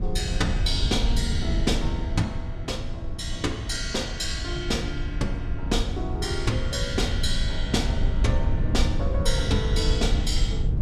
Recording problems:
low-frequency rumble; below 90 Hz, SNR 0 dB

